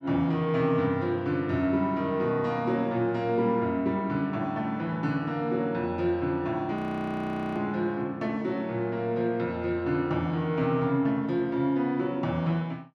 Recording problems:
audio freezing; at 7 s for 1 s

